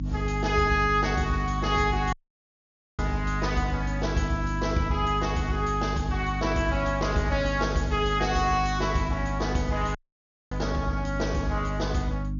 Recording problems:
low-pass filter; nothing above 6.9 kHz
hum; 50 Hz, harmonics up to 300 Hz, SNR 4 dB
audio cutting out; at 2 s for 1 s and at 10 s for 0.5 s

